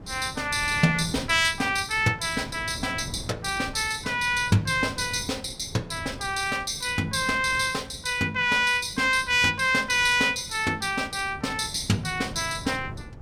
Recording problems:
wind on the microphone; below 270 Hz, SNR 17 dB

